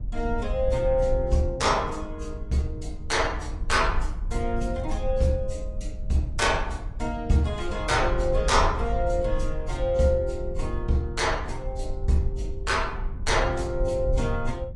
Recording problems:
codec artefacts; AAC, log-spectral distance 2 dB, nothing above 10.4 kHz
low-frequency rumble; below 66 Hz, SNR 6 dB

